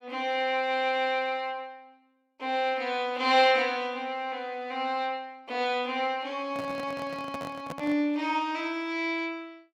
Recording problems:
microphone handling noise; from 6.5 to 8 s; peak -5 dB vs average level

